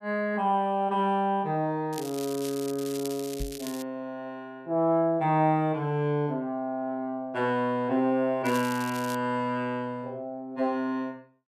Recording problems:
crackle; from 2 to 4 s and at 8.5 s; loose cable, SNR 14 dB
knock on the microphone; at 3.5 s; peak -3 dB vs average level

